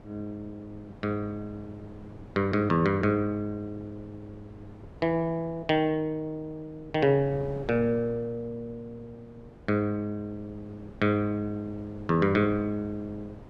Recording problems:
wind noise; below 410 Hz, SNR 20 dB

